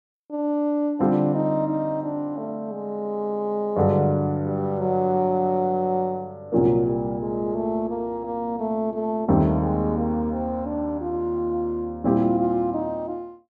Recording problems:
none

